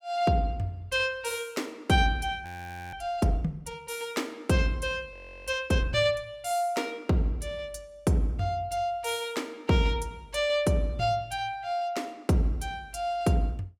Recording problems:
frozen audio; at 2.5 s and at 5 s

